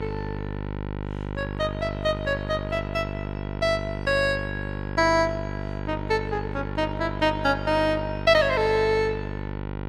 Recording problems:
hum; 50 Hz, harmonics up to 2 kHz, SNR 7 dB

